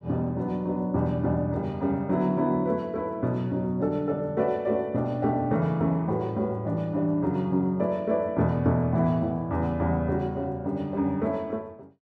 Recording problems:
none

